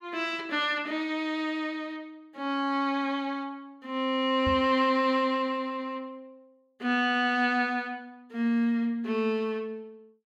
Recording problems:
microphone bump; at 4.5 s; peak -2 dB vs average level

